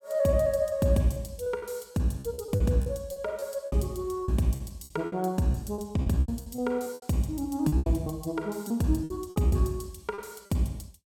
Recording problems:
packet loss; 12% of the sound replaced, filled with repeated pitch periods

